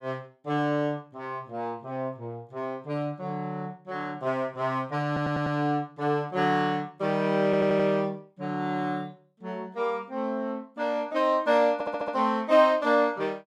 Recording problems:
stutter; at 5 s, at 7.5 s and at 12 s

